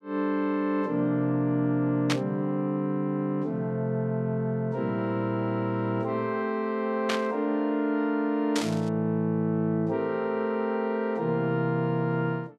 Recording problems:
static burst; at 2 s, at 7 s and at 8.5 s; peak +3 dB vs average level

